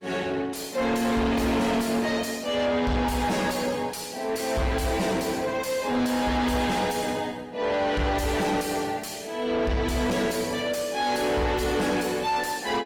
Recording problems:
lossy compression; Opus, log-spectral distance 4 dB, nothing above 17 kHz
distorted audio; soft clipping, signal-to-distortion ratio 7 dB

